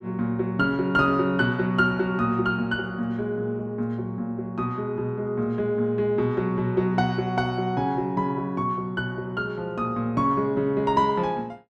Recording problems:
none

